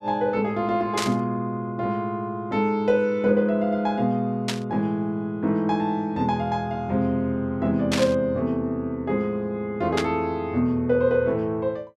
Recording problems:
static burst; 4 times, first at 1 s; peak +2 dB vs average level

